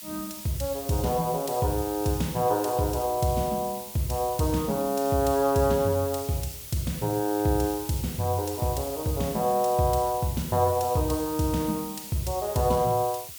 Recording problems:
hiss; SNR 11 dB

